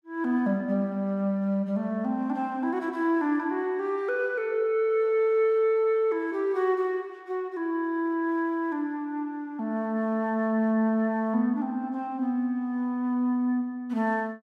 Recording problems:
none

